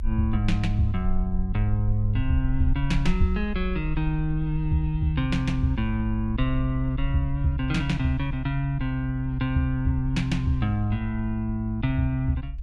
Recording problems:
low-frequency rumble; below 60 Hz, SNR 7 dB

